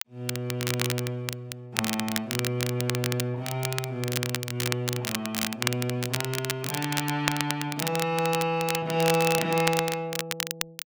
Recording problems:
crackle; vinyl, SNR 3 dB

